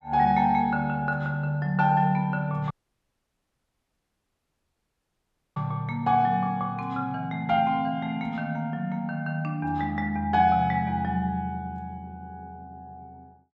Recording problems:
dropout; at 2.5 s for 3 s

